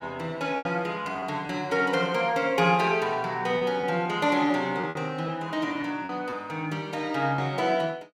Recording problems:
packet loss; 5% of the sound replaced, filled with repeated pitch periods

